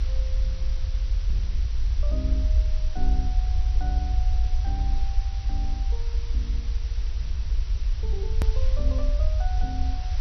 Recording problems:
lossy compression; MP2, log-spectral distance 3 dB
hiss; slope 0 dB per octave, SNR 6 dB
rumble; below 56 Hz, SNR -13 dB
edit click; at 8.5 s

